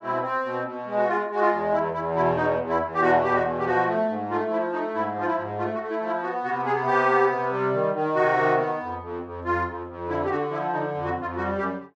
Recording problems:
none

